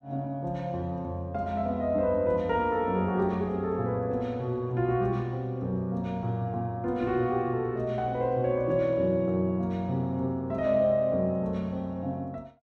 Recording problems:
none

